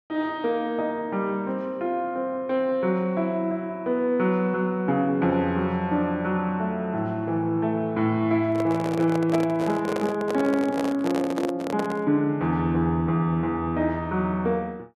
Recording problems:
microphone handling noise; from 8.5 to 12 s; peak -1 dB vs average level

